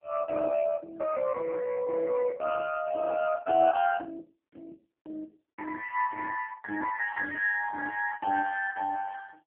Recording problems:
phone line; 240 Hz to 3.1 kHz, AMR-NB

